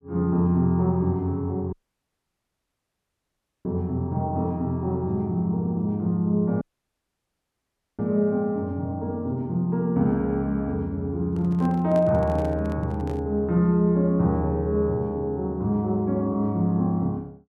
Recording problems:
audio cutting out; at 1.5 s for 2 s and at 6.5 s for 1.5 s
handling noise; from 11 to 13 s; peak -7 dB vs average level

